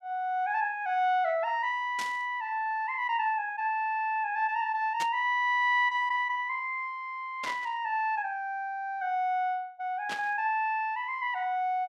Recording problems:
burst of static; 4 times, first at 2 s; peak -4 dB vs average level

